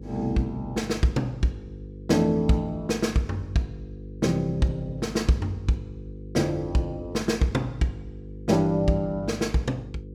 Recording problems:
hum; 50 Hz, harmonics up to 500 Hz, SNR 14 dB

